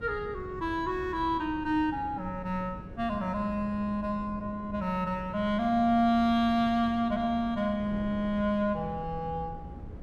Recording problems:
electrical hum; 60 Hz, harmonics up to 540 Hz, SNR 23 dB
wind noise; below 210 Hz, SNR 15 dB

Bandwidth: 14 kHz